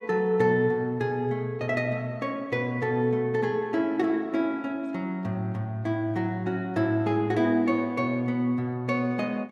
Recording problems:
none

